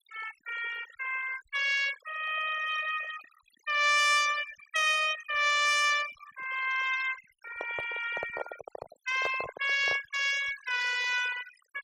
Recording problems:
noise reduction artefacts; signal-to-artefact ratio 12 dB
handling noise; from 7.5 to 10 s; peak -3 dB vs average level

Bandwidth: 15.5 kHz